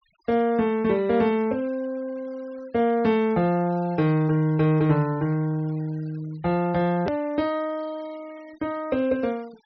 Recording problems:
treble missing; nothing above 6 kHz
denoising artefacts; signal-to-artefact ratio 27 dB
click at an edit; at 7 s

